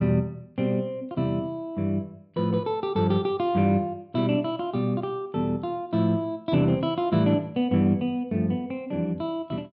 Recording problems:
treble cut off; nothing above 5.4 kHz

